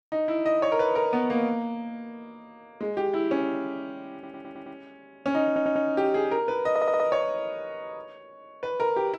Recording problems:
stutter; at 4 s, at 5.5 s and at 6.5 s

